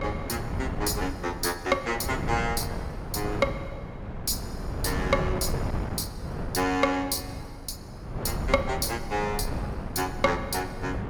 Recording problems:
wind noise; below 340 Hz, SNR 5 dB

